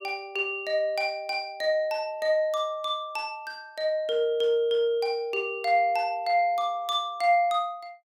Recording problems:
none

